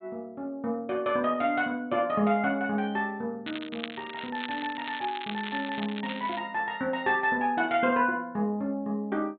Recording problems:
treble cut off; nothing above 4 kHz
crackling; from 3.5 to 6.5 s; loose cable, SNR 11 dB

